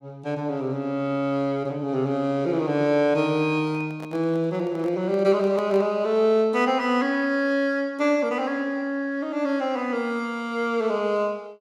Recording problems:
handling noise; from 3.5 to 6 s; peak -10 dB vs average level

